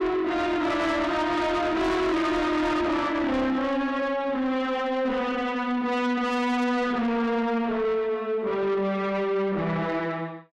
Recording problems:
distorted audio; soft clipping, signal-to-distortion ratio 8 dB

